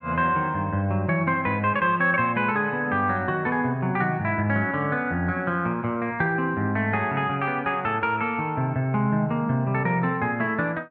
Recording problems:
none

